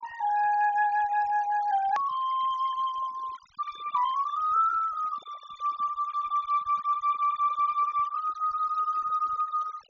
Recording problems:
low-pass filter; nothing above 6.9 kHz
denoising artefacts; signal-to-artefact ratio 19 dB
click at an edit; at 2 s

